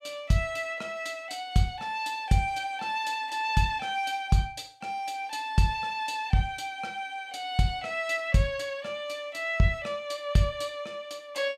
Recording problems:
none

